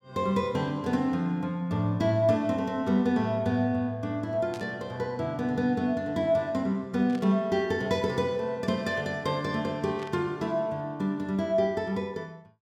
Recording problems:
burst of static; at 4.5 s, at 7 s and at 10 s; peak -12 dB vs average level

